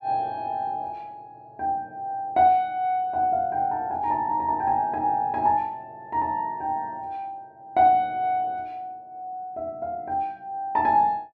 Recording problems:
none

